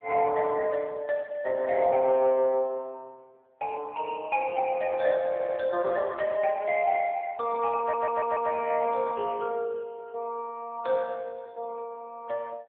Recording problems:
phone line; 260 Hz to 3.5 kHz, AMR-NB
stutter; at 5.5 s and at 8 s

